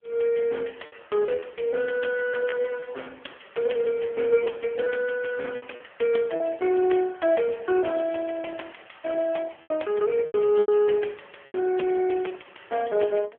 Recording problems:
phone line; 280 Hz to 3.3 kHz, AMR-NB
packet loss; 6% of the sound replaced, filled with repeated pitch periods

